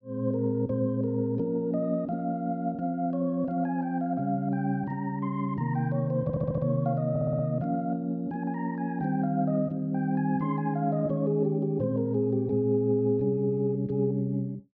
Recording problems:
stutter; at 6 s and at 7 s

